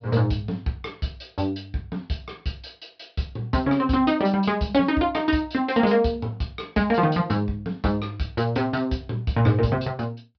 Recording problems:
treble missing; nothing above 5.5 kHz

